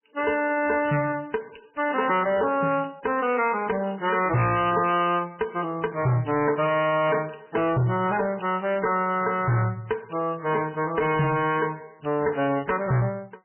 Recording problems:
lossy compression; MP3, log-spectral distance 6 dB, nothing above 2.7 kHz
distorted audio; hard clipping, signal-to-distortion ratio 11 dB

